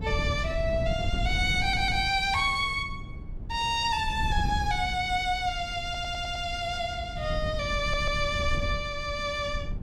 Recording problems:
wind noise; below 120 Hz, SNR 7 dB
stutter; at 1.5 s, at 6 s and at 8 s

